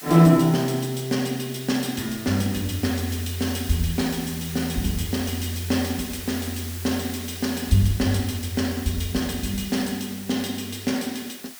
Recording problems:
hiss; SNR 12 dB

